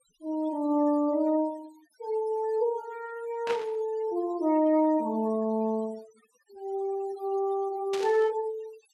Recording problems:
noise reduction artefacts; signal-to-artefact ratio 23 dB
burst of static; at 3.5 s and at 8 s; peak -3 dB vs average level

